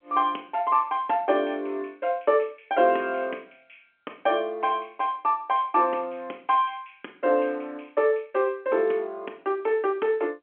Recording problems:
telephone audio; 260 Hz to 3.7 kHz, G.711

